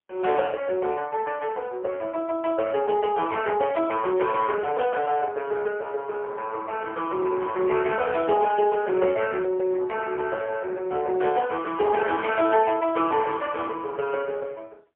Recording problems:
telephone audio; 340 Hz to 3 kHz, AMR-NB, then MP3

